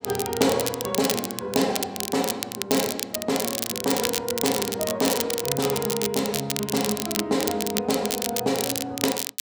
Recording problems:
crackling; vinyl, SNR 2 dB

